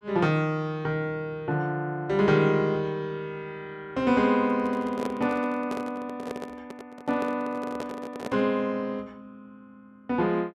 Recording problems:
handling noise; from 4.5 to 8.5 s; peak -2 dB vs average level

